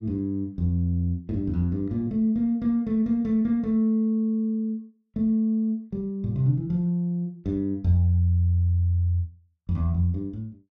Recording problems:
none

